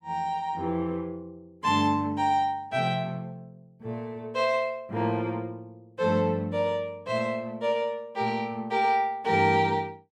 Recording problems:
none

